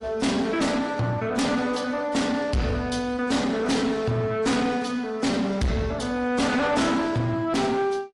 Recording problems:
lossy compression; MP3, then AAC, log-spectral distance 3 dB
distorted audio; soft clipping, signal-to-distortion ratio 7 dB

